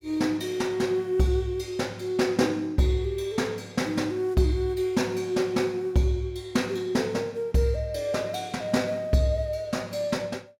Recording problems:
none

